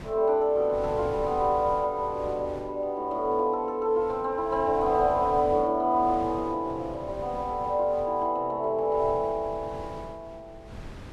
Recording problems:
wind noise; below 430 Hz, SNR 18 dB

